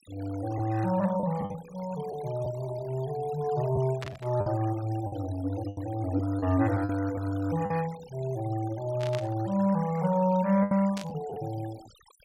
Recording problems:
noise reduction artefacts; signal-to-artefact ratio 19 dB
lost packets; 5% of the sound replaced, filled with the last packet
burst of static; at 4 s, at 9 s and at 11 s; peak -5 dB vs average level

